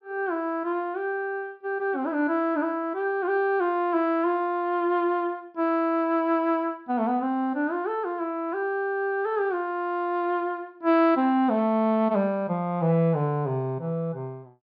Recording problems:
treble cut off; nothing above 5.5 kHz

